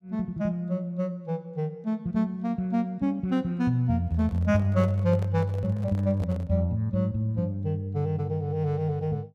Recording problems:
handling noise; from 4 to 6.5 s; peak -10 dB vs average level

